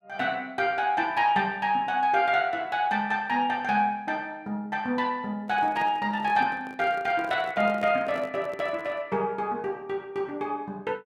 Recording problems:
microphone handling noise; from 5.5 to 9 s; peak -10 dB vs average level

